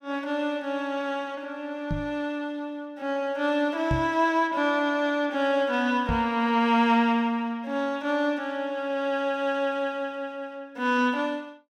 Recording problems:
microphone thump; at 2 s, at 4 s and at 6 s; peak +2 dB vs average level

